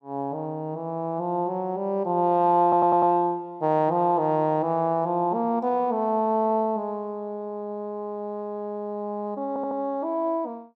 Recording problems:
audio stuttering; at 2.5 s and at 9.5 s

